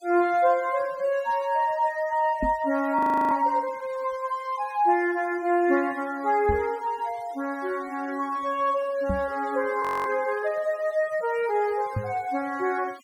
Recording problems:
noise reduction artefacts; signal-to-artefact ratio 24 dB
microphone thump; 4 times, first at 2.5 s; peak 0 dB vs average level
frozen audio; at 3 s and at 10 s

